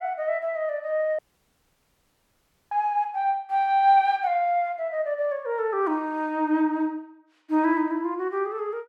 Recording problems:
dropout; at 1 s for 1.5 s

